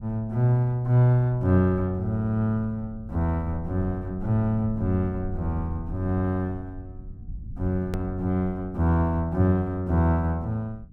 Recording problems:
low-frequency rumble; below 100 Hz, SNR 16 dB
edit click; at 8 s

